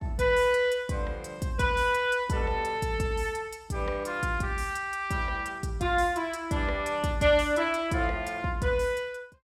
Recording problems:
none

